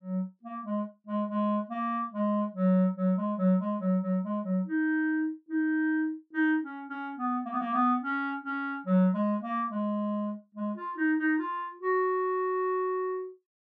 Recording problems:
none

